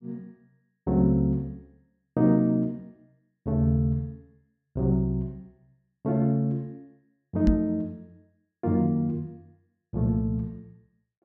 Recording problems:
knock on the microphone; at 7.5 s; peak +7 dB vs average level

